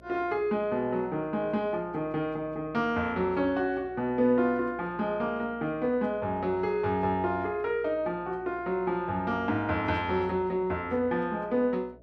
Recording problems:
hum; 60 Hz, harmonics up to 660 Hz, SNR 25 dB

